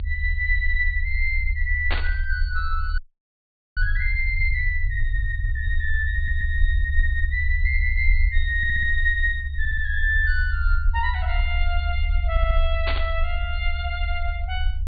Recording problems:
low-pass filter; nothing above 4.6 kHz
low-frequency rumble; below 72 Hz, SNR 0 dB
static burst; at 2 s and at 13 s; peak +3 dB vs average level
frozen audio; at 3 s for 1 s
stutter; 4 times, first at 6 s

